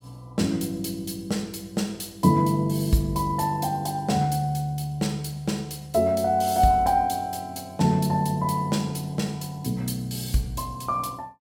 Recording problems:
none

